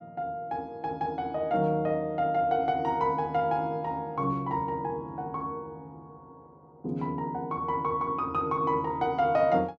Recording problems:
none

